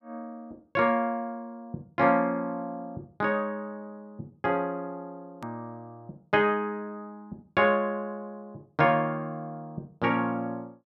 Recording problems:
edit click; at 5.5 s

